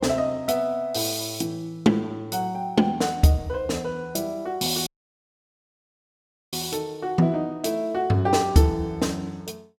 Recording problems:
audio cutting out; at 5 s for 1.5 s

